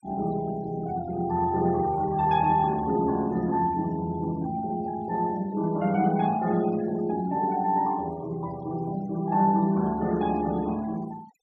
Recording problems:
noise reduction artefacts; signal-to-artefact ratio 23 dB

